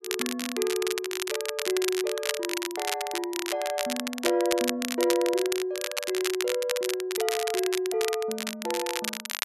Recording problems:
crackle; vinyl, SNR 3 dB

